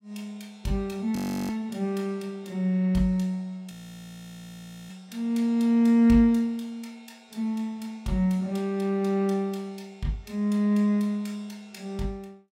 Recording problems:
audio freezing; at 1 s and at 3.5 s for 1 s

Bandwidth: 16 kHz